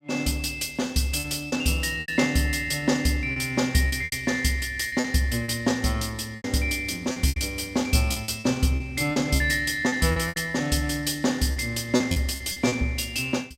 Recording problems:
packet loss; 9% of the sound replaced, filled with repeated pitch periods

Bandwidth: 16 kHz